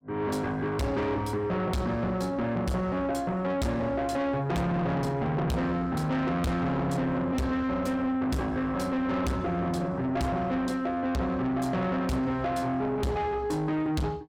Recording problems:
distortion; soft clipping, signal-to-distortion ratio 7 dB

